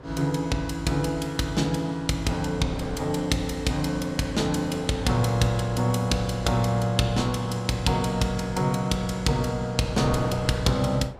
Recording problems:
wind noise; below 700 Hz, SNR 15 dB

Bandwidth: 15.5 kHz